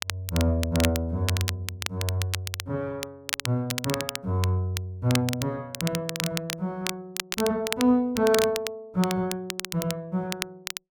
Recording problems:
crackle; vinyl, SNR 6 dB

